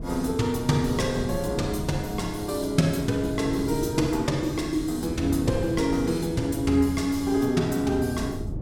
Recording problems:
wind on the microphone; below 230 Hz, SNR 10 dB

